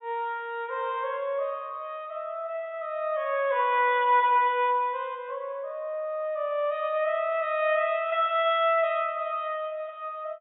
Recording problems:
treble missing; nothing above 4 kHz

